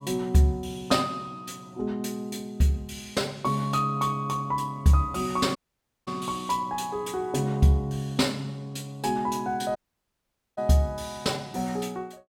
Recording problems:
audio cutting out; at 5.5 s for 0.5 s and at 10 s for 1 s

